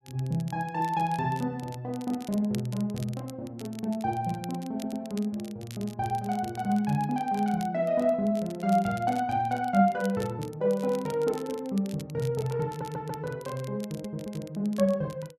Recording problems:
crackling; vinyl, SNR 20 dB
audio stuttering; at 5 s, at 13 s and at 14 s

